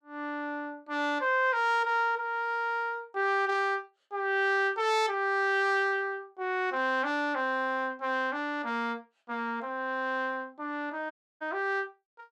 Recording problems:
audio cutting out; at 11 s

